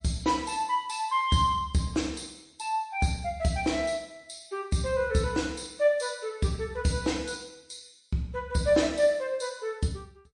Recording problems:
lossy codec; MP3, log-spectral distance 4 dB, nothing above 9.5 kHz

